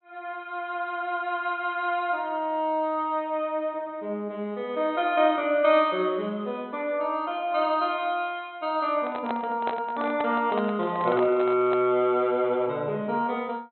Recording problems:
treble cut off; nothing above 4.1 kHz
microphone handling noise; from 9 to 12 s; peak -2 dB vs average level

